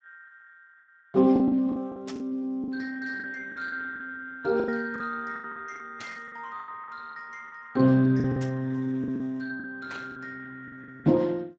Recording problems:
lossy codec; Speex, log-spectral distance 3 dB
lost packets; 12% of the sound replaced, filled with the last packet
burst of static; 4 times, first at 2 s; peak -9 dB vs average level

